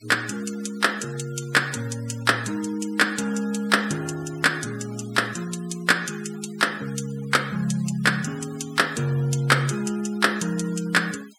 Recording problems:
denoising artefacts; signal-to-artefact ratio 19 dB

